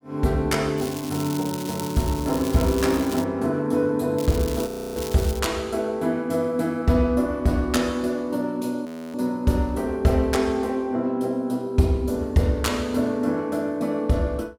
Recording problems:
crackling; from 1 to 3 s and from 4 to 5.5 s; loose cable, SNR 13 dB
frozen audio; at 4.5 s and at 9 s

